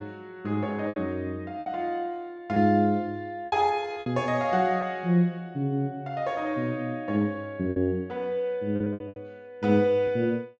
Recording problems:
treble cut off; nothing above 8 kHz
packet loss; 6% of the sound replaced, filled with repeated pitch periods

